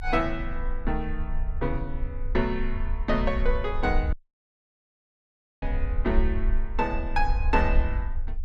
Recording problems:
low-frequency rumble; below 50 Hz, strongest tone 22 Hz, SNR 1 dB
audio cutting out; at 4 s for 1.5 s

